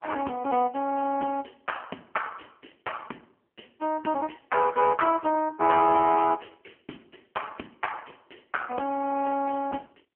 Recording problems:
phone line; 220 Hz to 2.5 kHz, AMR-NB

